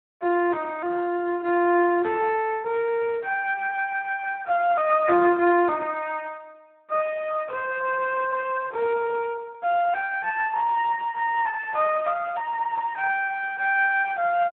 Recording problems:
telephone audio; 300 Hz to 3.1 kHz, Speex

